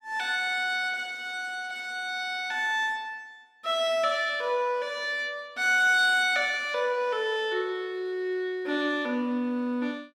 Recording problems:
none

